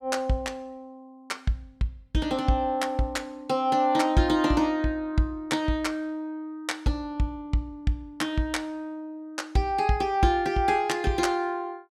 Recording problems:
none

